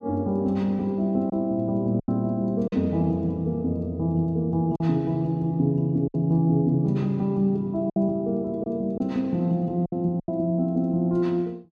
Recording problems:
packet loss; 4% of the sound replaced, filled with silence

